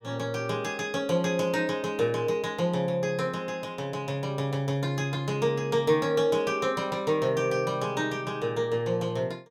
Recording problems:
none

